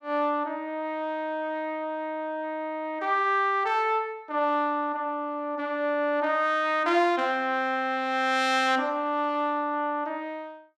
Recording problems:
none

